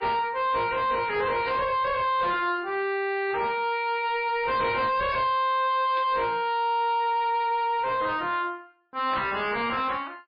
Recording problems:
lossy codec; MP3, log-spectral distance 2 dB, nothing above 4.2 kHz
distorted audio; soft clipping, signal-to-distortion ratio 7 dB
burst of static; at 1.5 s, at 6 s and at 9 s; peak -9 dB vs average level

